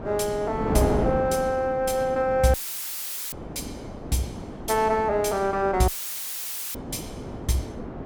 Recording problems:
wind noise; below 520 Hz, SNR 8 dB
audio cutting out; at 2.5 s for 1 s and at 6 s for 1 s; filled with static

